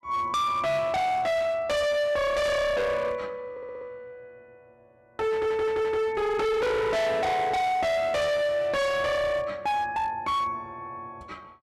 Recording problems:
distorted audio; hard clipping, signal-to-distortion ratio 6 dB
stutter; at 3.5 s and at 5.5 s

